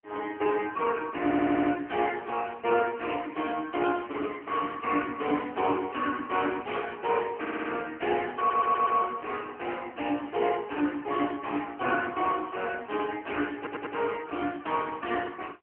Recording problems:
phone line; 190 Hz to 3.1 kHz, AMR-NB
audio stuttering; 4 times, first at 1 s

